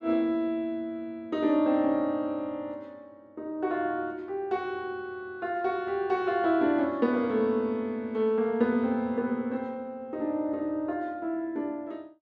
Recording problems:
none

